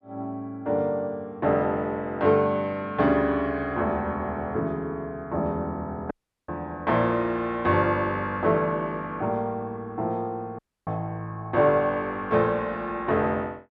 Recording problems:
audio cutting out; at 6 s and at 11 s

